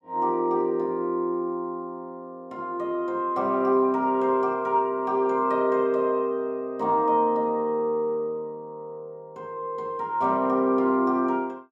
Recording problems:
none

